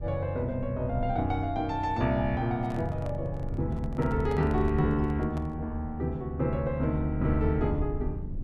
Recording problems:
low-frequency rumble; below 98 Hz, SNR 11 dB
microphone handling noise; from 2.5 to 5.5 s; peak -9 dB vs average level

